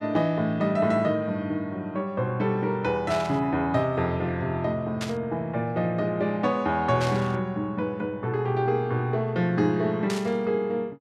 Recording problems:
burst of static; 4 times, first at 3 s; peak -4 dB vs average level

